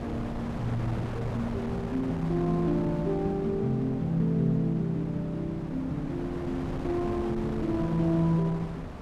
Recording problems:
wind noise; below 600 Hz, SNR 9 dB

